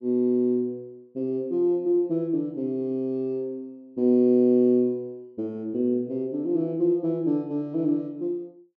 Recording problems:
none

